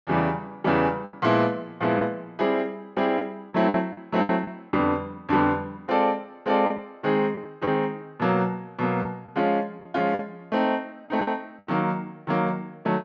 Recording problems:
low-pass filter; nothing above 8 kHz
packet loss; 5% of the sound replaced, filled with the last packet

